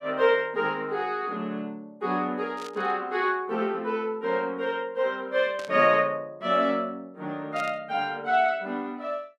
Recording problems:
static burst; at 2.5 s, at 5.5 s and at 7.5 s; peak -11 dB vs average level

